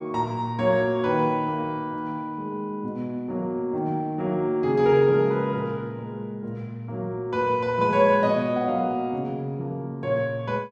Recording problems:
none

